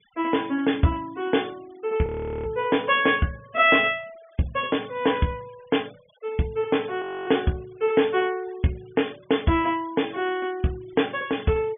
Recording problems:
low-pass filter; nothing above 3.5 kHz
noise reduction artefacts; signal-to-artefact ratio 26 dB
frozen audio; at 2 s and at 7 s

